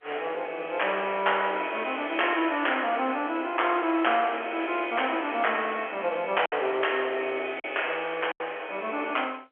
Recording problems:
telephone audio; 280 Hz to 3.3 kHz, G.711
lost packets; 1.9% of the sound replaced, filled with silence

